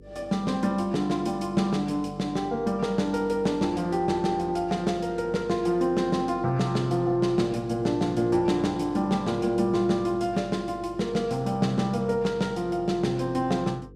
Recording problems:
electrical hum; 50 Hz, harmonics up to 500 Hz, SNR 22 dB

